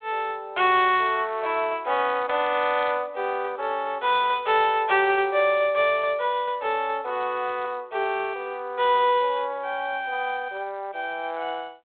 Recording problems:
phone line; 340 Hz to 3.8 kHz, G.726

